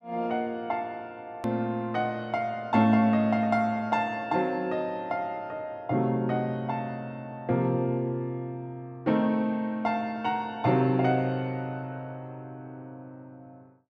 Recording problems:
click at an edit; at 1.5 s

